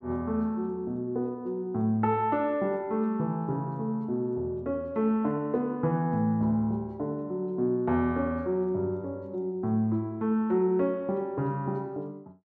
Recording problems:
none

